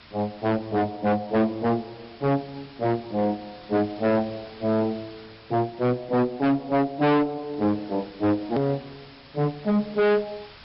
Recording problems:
low-pass filter; nothing above 5.3 kHz
lossy codec; MP3, log-spectral distance 8 dB
distorted audio; hard clipping, signal-to-distortion ratio 7 dB
background hiss; SNR 22 dB
click at an edit; at 8.5 s

